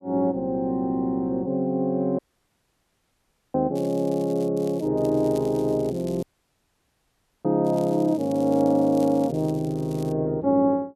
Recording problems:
audio cutting out; at 2 s for 1.5 s and at 6 s for 1 s
crackling; 4 times, first at 4 s; loose cable, SNR 25 dB

